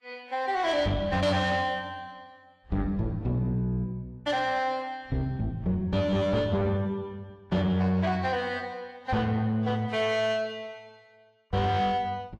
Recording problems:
lossy codec; Vorbis, log-spectral distance 2 dB, nothing above 12.3 kHz
distorted audio; soft clipping, signal-to-distortion ratio 11 dB

